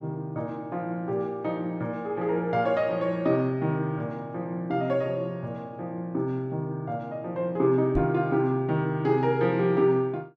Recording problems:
microphone thump; at 8 s; peak +1 dB vs average level

